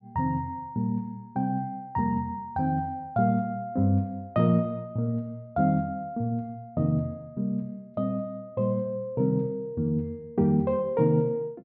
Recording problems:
none

